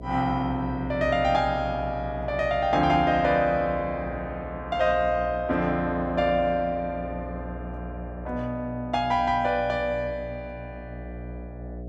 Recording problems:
mains hum; 60 Hz, harmonics up to 720 Hz, SNR 13 dB

